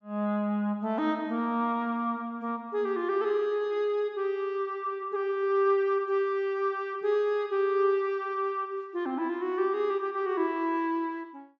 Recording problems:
treble missing; nothing above 8 kHz

